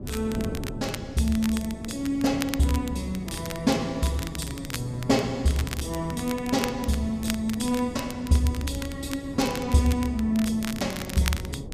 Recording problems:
wind noise; below 290 Hz, SNR 11 dB
crackling; vinyl, SNR 12 dB

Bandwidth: 14.5 kHz